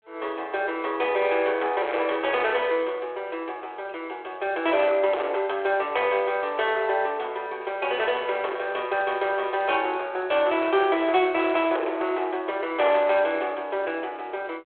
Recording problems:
telephone audio; 340 Hz to 3.4 kHz, G.726
distorted audio; hard clipping, signal-to-distortion ratio 12 dB

